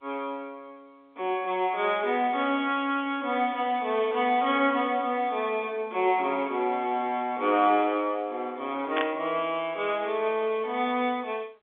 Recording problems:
telephone audio; 280 Hz to 3.5 kHz, G.711
burst of static; at 9 s; peak 0 dB vs average level

